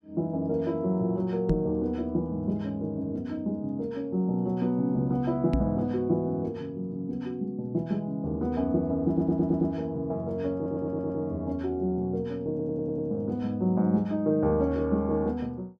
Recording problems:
microphone thump; at 1.5 s and at 5.5 s; peak +5 dB vs average level
stutter; at 9 s, at 11 s and at 13 s

